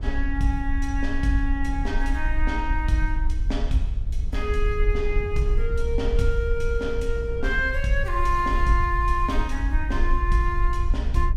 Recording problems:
low-frequency rumble; below 54 Hz, SNR 1 dB
wind noise; below 180 Hz, SNR 16 dB

